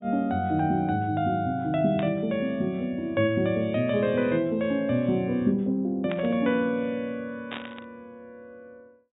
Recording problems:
low-pass filter; nothing above 4 kHz
burst of static; at 2 s, at 6 s and at 7.5 s; peak -6 dB vs average level

